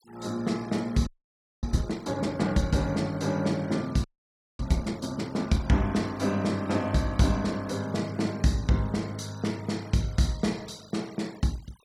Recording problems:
denoising artefacts; signal-to-artefact ratio 23 dB
frozen audio; at 1 s for 0.5 s and at 4 s for 0.5 s

